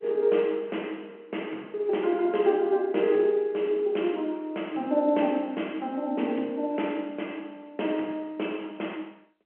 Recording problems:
phone line; 240 Hz to 3.1 kHz, G.711

